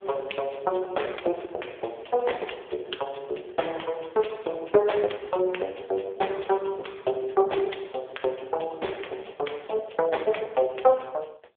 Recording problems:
phone line; 340 Hz to 3.5 kHz, AMR-NB

